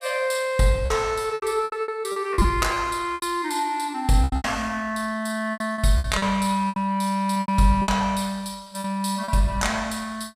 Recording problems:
packet loss; 12% of the sound replaced, filled with repeated pitch periods

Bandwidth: 14.5 kHz